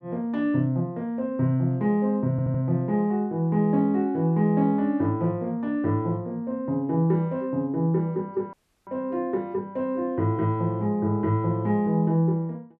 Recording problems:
audio stuttering; at 2.5 s
audio cutting out; at 8.5 s

